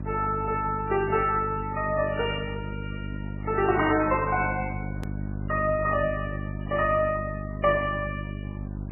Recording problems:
lossy codec; AAC, then MP3, log-spectral distance 4 dB, nothing above 2.9 kHz
hum; 50 Hz, harmonics up to 650 Hz, SNR 8 dB
background hiss; SNR 25 dB
edit click; at 5 s

